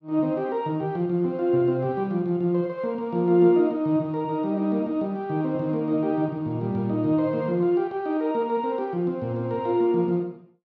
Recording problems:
none

